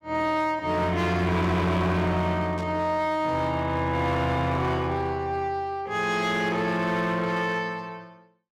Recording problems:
distortion; hard clipping, signal-to-distortion ratio 11 dB
static burst; at 2.5 s; peak -15 dB vs average level

